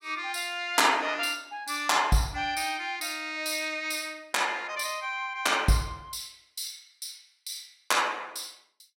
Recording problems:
none

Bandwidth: 16 kHz